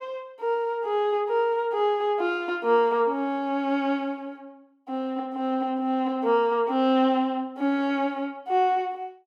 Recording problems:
none

